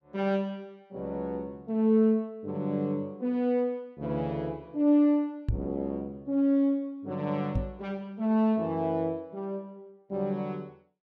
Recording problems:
microphone bump; at 5.5 s and at 7.5 s; peak +4 dB vs average level

